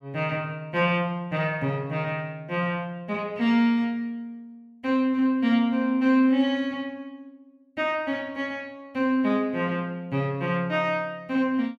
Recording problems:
none

